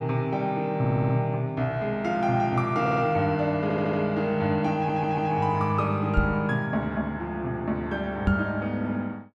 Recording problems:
stutter; 4 times, first at 1 s
microphone bump; at 6 s and at 8.5 s; peak +6 dB vs average level

